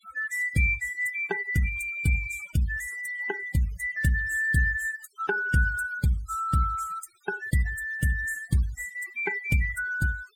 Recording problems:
denoising artefacts; signal-to-artefact ratio 18 dB

